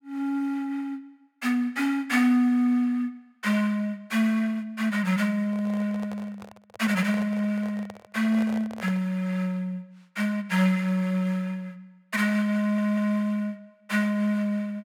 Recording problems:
microphone handling noise; from 5.5 to 9 s; peak -10 dB vs average level
stutter; at 13 s

